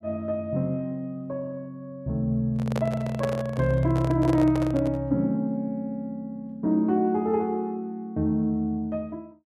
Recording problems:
microphone handling noise; from 2.5 to 5 s; peak -1 dB vs average level

